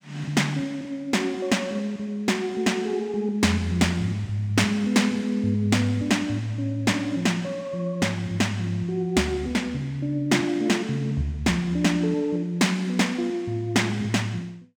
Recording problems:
none

